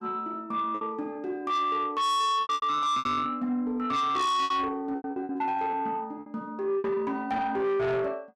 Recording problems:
distorted audio; soft clipping, signal-to-distortion ratio 7 dB
packet loss; 10% of the sound replaced, filled with repeated pitch periods

